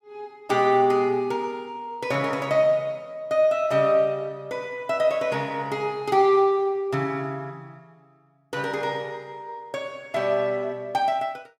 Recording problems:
none

